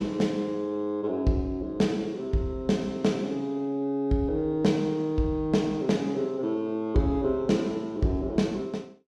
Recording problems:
none

